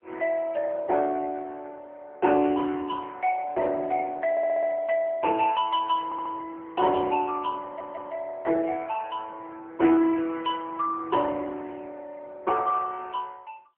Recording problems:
phone line; 260 Hz to 3 kHz, AMR-NB
stutter; at 4.5 s, at 6 s and at 7.5 s

